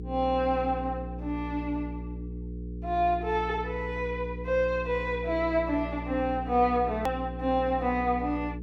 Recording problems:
hum; 60 Hz, harmonics up to 480 Hz, SNR 9 dB
click at an edit; at 7 s

